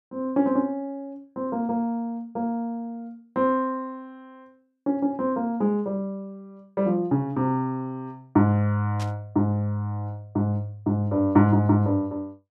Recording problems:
static burst; at 9 s; peak -10 dB vs average level

